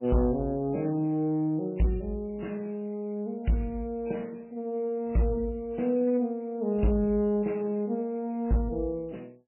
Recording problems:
codec artefacts; MP3, log-spectral distance 4 dB, nothing above 2.8 kHz
distortion; hard clipping, signal-to-distortion ratio 12 dB

